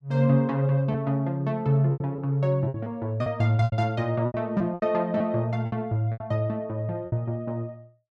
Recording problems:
lost packets; 9% of the sound replaced, filled with repeated pitch periods

